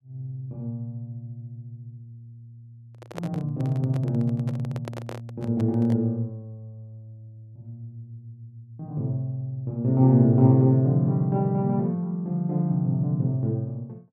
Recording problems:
handling noise; from 3 to 6 s; peak -7 dB vs average level

